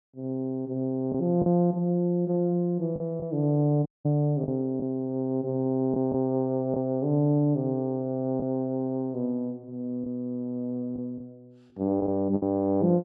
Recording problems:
lost packets; 3% of the sound replaced, filled with the last packet
audio cutting out; at 4 s

